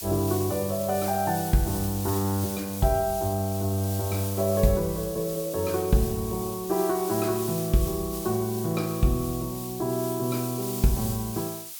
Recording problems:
background hiss; slope +4 dB per octave, SNR 8 dB

